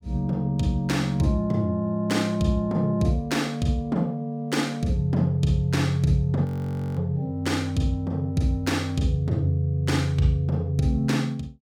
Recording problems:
frozen audio; at 6.5 s for 0.5 s

